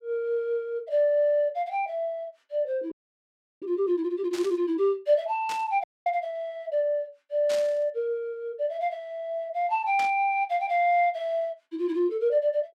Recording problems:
audio freezing; at 3 s for 0.5 s and at 6 s
burst of static; 4 times, first at 4.5 s; peak -6 dB vs average level

